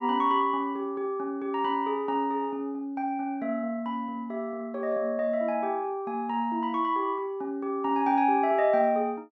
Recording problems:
none

